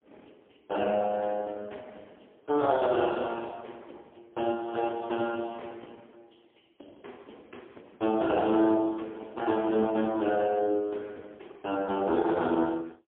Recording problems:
phone line; 260 Hz to 3.4 kHz, AMR-NB, then MP3

